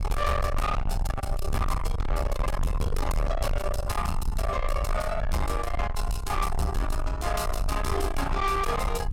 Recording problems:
distortion; soft clipping, signal-to-distortion ratio 7 dB
rumble; below 90 Hz, SNR 2 dB

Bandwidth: 16 kHz